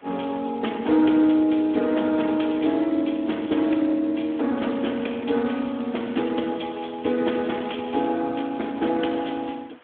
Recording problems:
telephone audio; 190 Hz to 3.5 kHz, Speex
hiss; SNR 29 dB
crackle; from 2 to 4 s and from 4 to 8 s; loose cable, SNR 26 dB

